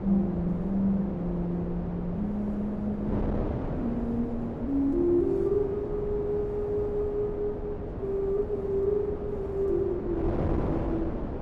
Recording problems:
wind noise; below 450 Hz, SNR 5 dB

